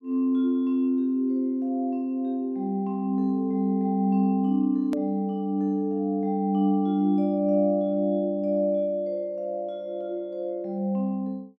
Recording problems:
click at an edit; at 5 s

